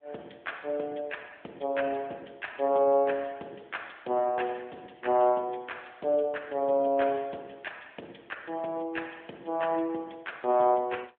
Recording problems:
phone line; 260 Hz to 3.5 kHz, AMR-NB

